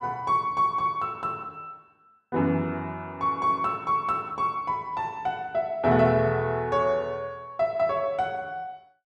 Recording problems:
none

